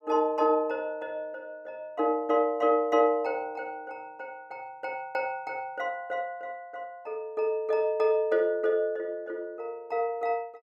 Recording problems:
none

